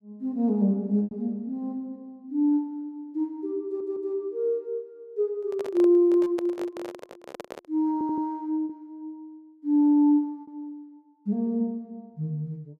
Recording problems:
lost packets; 2% of the sound replaced, filled with repeated pitch periods
audio stuttering; at 3.5 s and at 8 s
microphone handling noise; from 5.5 to 8 s; peak -6 dB vs average level

